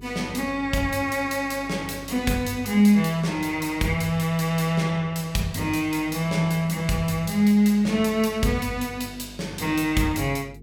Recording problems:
hum; 50 Hz, harmonics up to 450 Hz, SNR 22 dB

